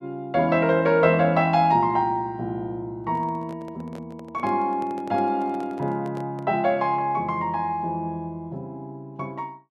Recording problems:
handling noise; from 3 to 6.5 s; peak -12 dB vs average level

